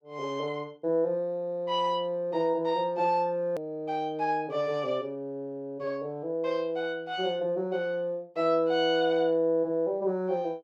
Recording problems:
edit click; at 3.5 s

